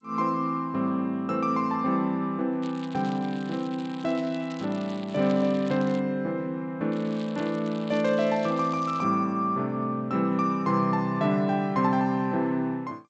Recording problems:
codec artefacts; G.722, log-spectral distance 3 dB
crackling; from 2.5 to 6 s and from 7 to 9 s; loose cable, SNR 21 dB

